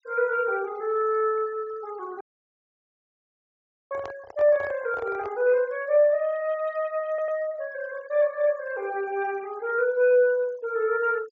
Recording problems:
treble missing; nothing above 8 kHz
noise reduction artefacts; signal-to-artefact ratio 25 dB
dropout; at 2 s for 1.5 s
microphone handling noise; from 4 to 5.5 s; peak -10 dB vs average level
audio stuttering; at 7 s

